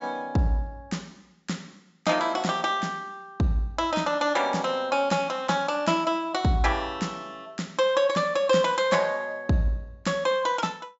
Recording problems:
treble missing; nothing above 8 kHz

